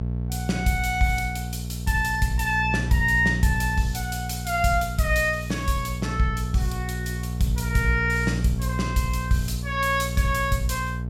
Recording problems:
hum; 60 Hz, harmonics up to 660 Hz, SNR 5 dB

